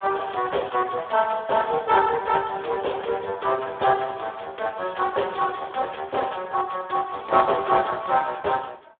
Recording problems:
telephone audio; 320 Hz to 3.6 kHz, Speex

